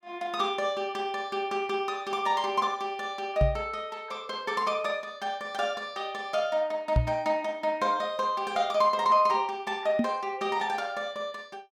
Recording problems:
knock on the microphone; at 3.5 s, at 7 s and at 10 s; peak +8 dB vs average level

